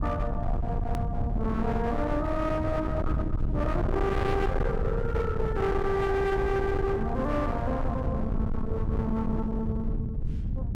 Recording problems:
distorted audio; hard clipping, signal-to-distortion ratio 8 dB
low-frequency rumble; below 170 Hz, SNR 2 dB
edit click; at 1 s

